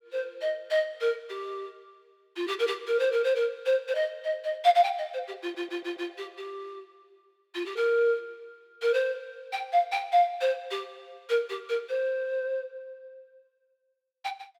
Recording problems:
stutter; at 5.5 s

